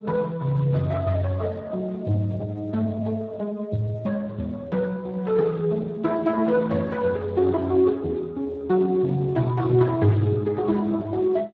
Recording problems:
lossy compression; Speex, log-spectral distance 3 dB

